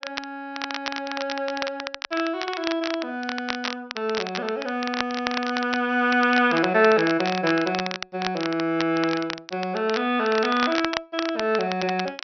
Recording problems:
low-pass filter; nothing above 5.9 kHz
crackling; vinyl, SNR 8 dB

